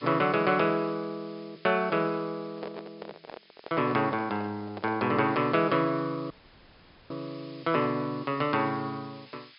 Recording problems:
treble missing; nothing above 5.5 kHz
background hiss; SNR 24 dB
microphone handling noise; from 2.5 to 5 s; peak -7 dB vs average level
audio cutting out; at 6.5 s for 1 s

